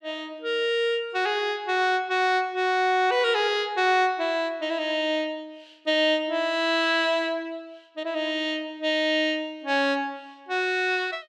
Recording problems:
none

